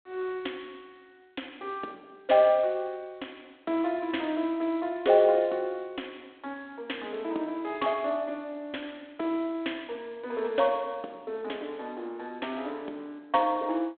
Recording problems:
telephone audio; 240 Hz to 3.4 kHz, G.726

